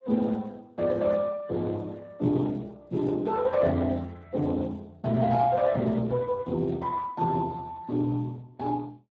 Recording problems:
codec artefacts; Speex, log-spectral distance 3 dB

